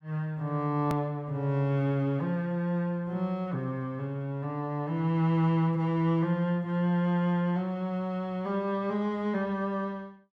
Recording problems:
hard cut with a click; at 1 s

